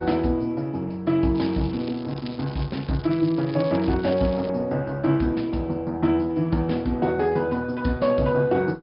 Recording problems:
low-pass filter; nothing above 5.2 kHz
lossy compression; Opus, log-spectral distance 3 dB
crackling; from 1.5 to 4.5 s; loose cable, SNR 21 dB

